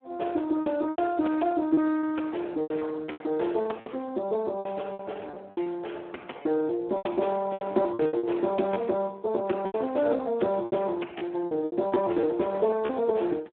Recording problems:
telephone audio; 260 Hz to 3.3 kHz, Speex
lost packets; 12% of the sound replaced, filled with repeated pitch periods

